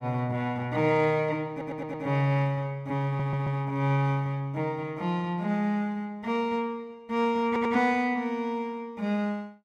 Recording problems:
stutter; at 1.5 s, at 3 s and at 7.5 s

